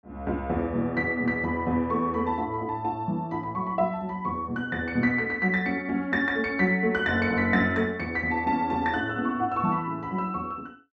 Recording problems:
low-pass filter; nothing above 8 kHz

